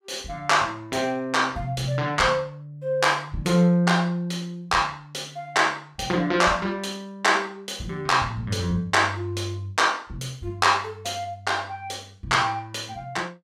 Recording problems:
none

